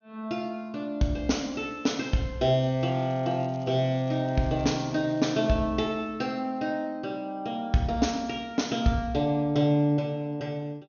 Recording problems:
treble missing; nothing above 6.6 kHz
crackling; from 2.5 to 5.5 s; loose cable, SNR 29 dB

